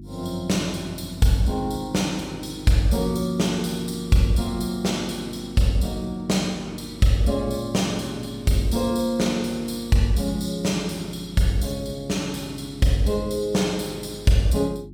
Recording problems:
electrical hum; 50 Hz, harmonics up to 350 Hz, SNR 18 dB

